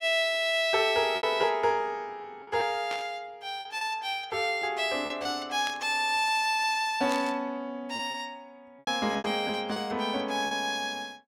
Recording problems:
packet loss; 6% of the sound replaced, filled with repeated pitch periods
burst of static; at 3 s, at 5.5 s and at 7 s; peak -5 dB vs average level

